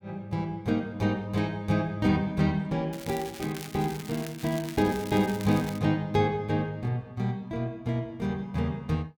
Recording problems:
crackling; from 3 to 6 s; loose cable, SNR 14 dB

